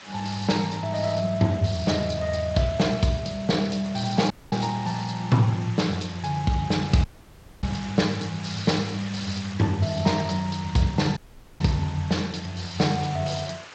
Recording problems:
codec artefacts; Speex, log-spectral distance 10 dB, nothing above 7.6 kHz
background hiss; SNR 16 dB
audio cutting out; at 4.5 s, at 7 s for 0.5 s and at 11 s

